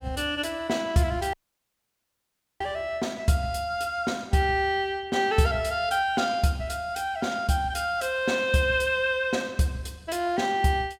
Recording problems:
dropout; at 1.5 s for 1.5 s

